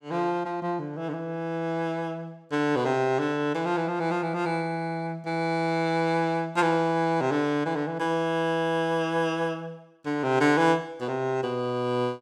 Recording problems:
none

